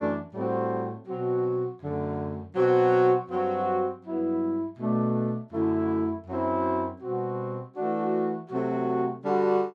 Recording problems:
none

